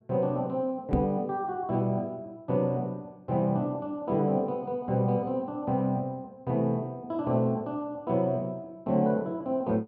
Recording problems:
microphone thump; at 1 s; peak +5 dB vs average level

